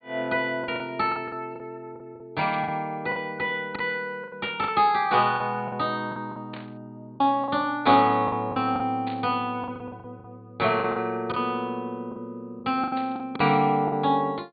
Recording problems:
treble cut off; nothing above 4.6 kHz
packet loss; 10% of the sound replaced, filled with the last packet
burst of static; 5 times, first at 2.5 s; peak -10 dB vs average level

